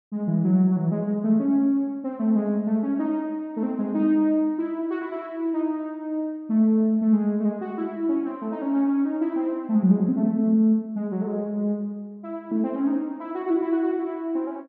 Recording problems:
none

